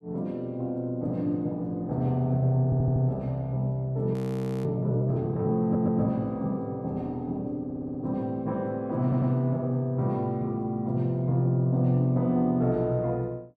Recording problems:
audio stuttering; 4 times, first at 2.5 s
frozen audio; at 4 s for 0.5 s

